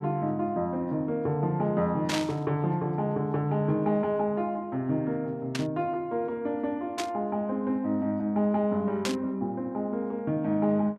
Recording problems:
burst of static; 4 times, first at 2 s; peak +2 dB vs average level

